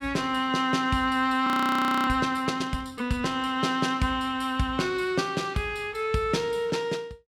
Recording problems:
audio freezing; at 1.5 s for 0.5 s

